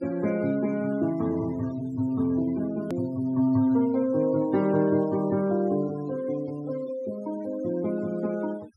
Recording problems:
denoising artefacts; signal-to-artefact ratio 21 dB
hard cut with a click; at 3 s

